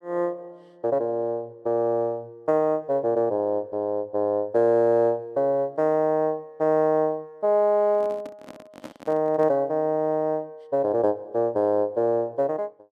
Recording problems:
handling noise; from 8 to 9.5 s; peak -10 dB vs average level

